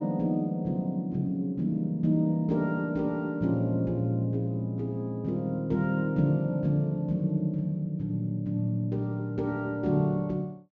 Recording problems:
treble missing; nothing above 7.1 kHz

